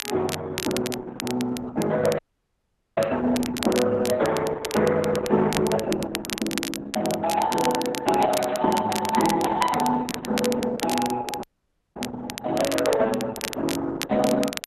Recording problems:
lossy codec; Opus, then Opus, log-spectral distance 3 dB
crackle; vinyl, SNR 9 dB
audio cutting out; at 2 s for 1 s and at 11 s for 0.5 s

